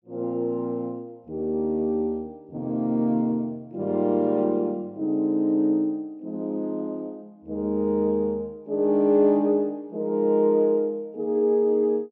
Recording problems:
none

